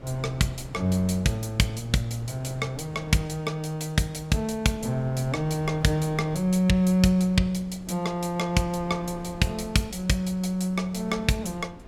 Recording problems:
wind on the microphone; below 360 Hz, SNR 19 dB

